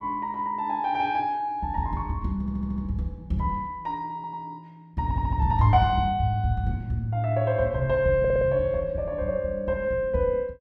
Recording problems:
stutter; 4 times, first at 2.5 s

